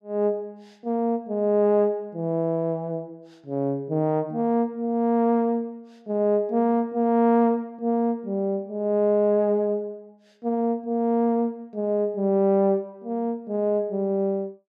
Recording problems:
none

